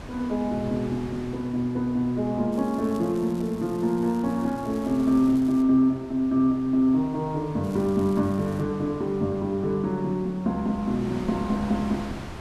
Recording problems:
wind noise; below 980 Hz, SNR 17 dB
crackle; from 2.5 to 5.5 s and from 7.5 to 8.5 s; loose cable, SNR 26 dB

